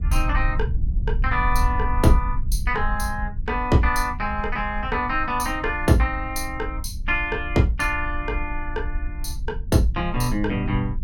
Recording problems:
low-frequency rumble; below 62 Hz, SNR 6 dB

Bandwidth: 17.5 kHz